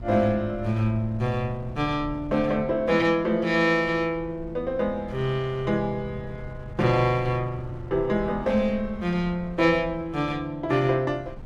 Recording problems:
wind on the microphone; below 130 Hz, SNR 17 dB

